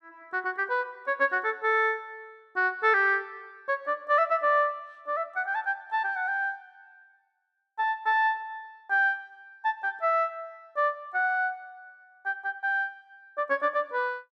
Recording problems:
none

